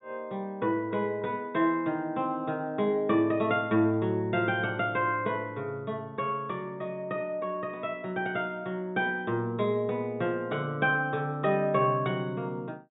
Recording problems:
treble missing; nothing above 4 kHz

